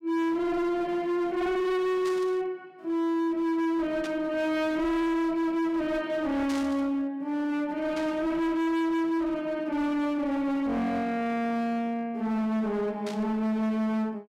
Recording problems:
distortion; hard clipping, signal-to-distortion ratio 7 dB
static burst; 5 times, first at 2 s; peak -8 dB vs average level

